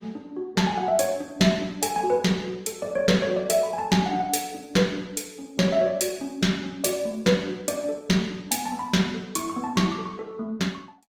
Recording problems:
lossy codec; Opus, log-spectral distance 4 dB

